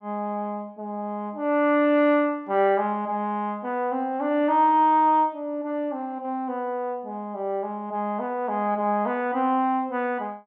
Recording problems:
none

